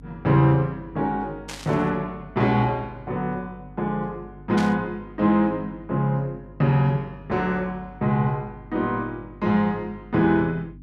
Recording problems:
electrical hum; 50 Hz, harmonics up to 300 Hz, SNR 21 dB
burst of static; at 1.5 s and at 4.5 s; peak -6 dB vs average level

